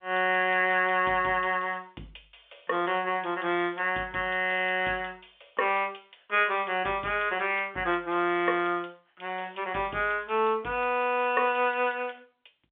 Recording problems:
telephone audio; 220 Hz to 3.4 kHz, G.711

